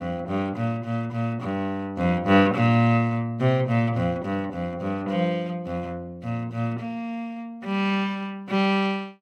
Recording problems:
none

